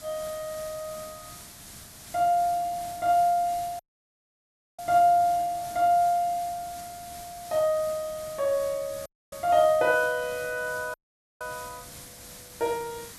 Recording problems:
background hiss; slope 0 dB per octave, SNR 17 dB
audio cutting out; at 4 s for 1 s, at 9 s and at 11 s

